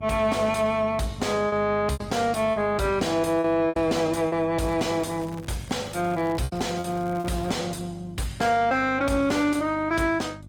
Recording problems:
lossy compression; Opus, log-spectral distance 3 dB, nothing above 18.9 kHz
distortion; soft clipping, signal-to-distortion ratio 6 dB
electrical hum; 50 Hz, harmonics up to 600 Hz, SNR 18 dB
lost packets; 5% of the sound replaced, filled with repeated pitch periods
crackle; from 4.5 to 7.5 s; loose cable, SNR 22 dB

